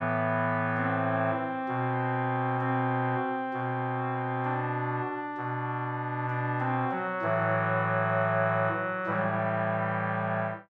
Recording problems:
none

